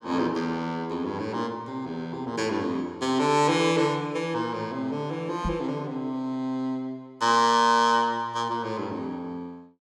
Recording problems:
microphone thump; at 5.5 s; peak -1 dB vs average level

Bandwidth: 17 kHz